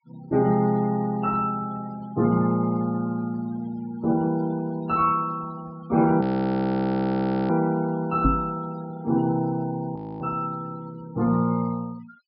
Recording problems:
treble cut off; nothing above 5.5 kHz
noise reduction artefacts; signal-to-artefact ratio 22 dB
frozen audio; at 6 s for 1.5 s and at 10 s
microphone thump; at 8.5 s; peak +5 dB vs average level

